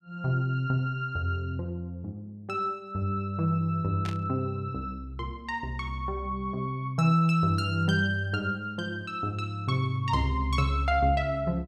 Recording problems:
static burst; at 4 s; peak -7 dB vs average level

